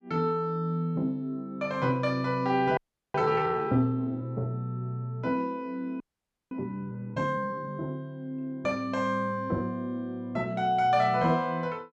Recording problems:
frozen audio; at 3 s and at 6 s for 0.5 s

